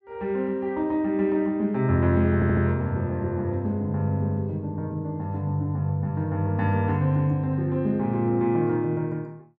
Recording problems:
audio stuttering; at 2.5 s

